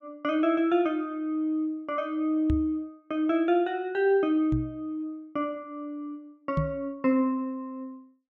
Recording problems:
microphone bump; at 2.5 s, at 4.5 s and at 6.5 s; peak +4 dB vs average level

